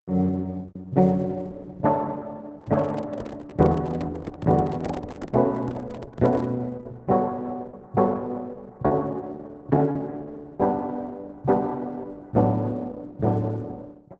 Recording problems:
codec artefacts; Opus, log-spectral distance 2 dB, nothing above 7.3 kHz
lost packets; 1.8% of the sound replaced, filled with repeated pitch periods
microphone handling noise; from 2.5 to 6.5 s; peak -5 dB vs average level

